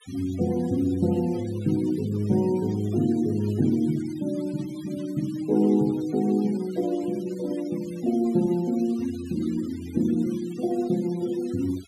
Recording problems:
noise reduction artefacts; signal-to-artefact ratio 22 dB

